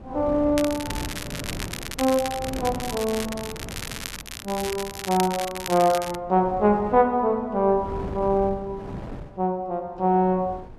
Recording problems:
wind on the microphone; below 380 Hz, SNR 14 dB
crackling; from 0.5 to 4 s and from 4.5 to 6 s; loose cable, SNR 10 dB

